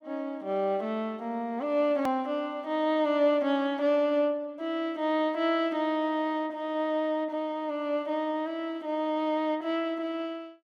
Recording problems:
hard cut with a click; at 2 s

